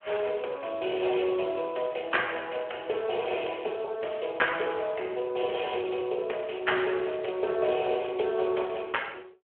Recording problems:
telephone audio; 320 Hz to 3.3 kHz, Speex

